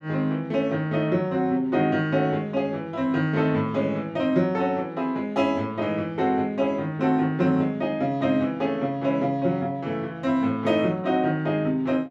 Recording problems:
none

